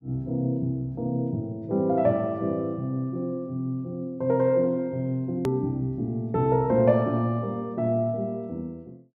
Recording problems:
hard cut with a click; at 5.5 s

